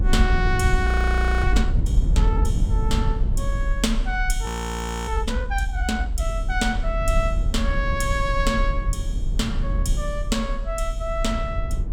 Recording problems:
low-frequency rumble; below 66 Hz, SNR -2 dB
frozen audio; at 1 s for 0.5 s and at 4.5 s for 0.5 s

